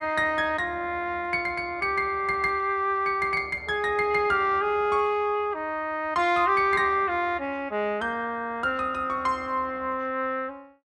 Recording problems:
none

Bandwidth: 12 kHz